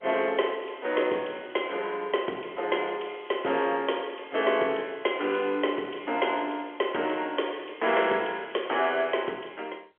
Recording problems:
phone line; 300 Hz to 3.3 kHz, G.711

